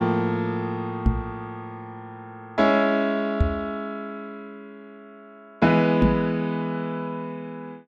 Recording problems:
microphone thump; at 1 s, at 3.5 s and at 6 s; peak +8 dB vs average level

